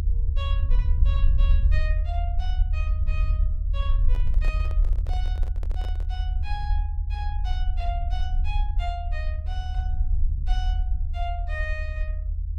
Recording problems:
low-frequency rumble; below 72 Hz, SNR -12 dB
microphone handling noise; from 4 to 6 s; peak -1 dB vs average level

